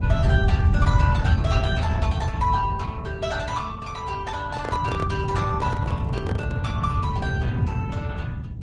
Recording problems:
lossy compression; Opus, then Vorbis, log-spectral distance 2 dB
rumble; below 130 Hz, SNR -5 dB
microphone handling noise; from 4.5 to 6.5 s; peak 0 dB vs average level

